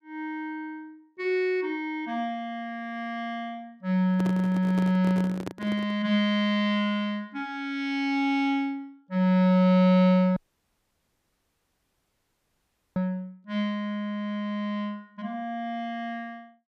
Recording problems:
microphone handling noise; from 4 to 6 s; peak -4 dB vs average level
audio cutting out; at 10 s for 2.5 s

